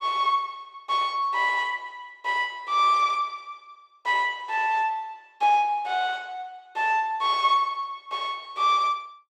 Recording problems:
none

